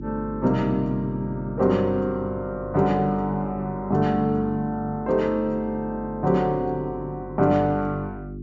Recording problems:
treble cut off; nothing above 7.2 kHz
mains hum; 50 Hz, harmonics up to 400 Hz, SNR 13 dB

